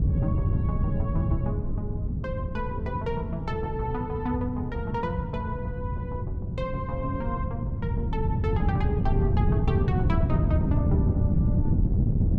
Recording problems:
wind noise; below 160 Hz, SNR -6 dB

